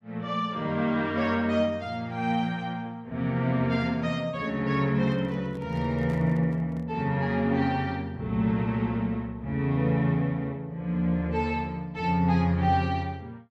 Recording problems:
handling noise; from 5 to 7 s; peak -9 dB vs average level

